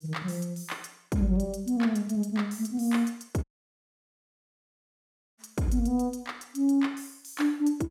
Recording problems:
audio cutting out; at 3.5 s for 2 s

